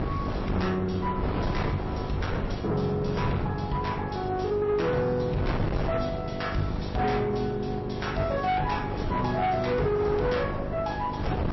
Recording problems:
lossy codec; MP3, log-spectral distance 3 dB, nothing above 5.7 kHz
distortion; soft clipping, signal-to-distortion ratio 11 dB
hum; 50 Hz, harmonics up to 1.4 kHz, SNR 8 dB
wind on the microphone; below 490 Hz, SNR 6 dB

